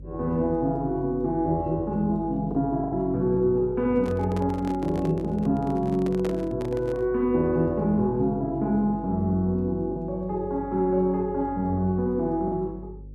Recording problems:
hum; 50 Hz, harmonics up to 450 Hz, SNR 17 dB
packet loss; 1.5% of the sound replaced, filled with the last packet
handling noise; from 4 to 7 s; peak -4 dB vs average level

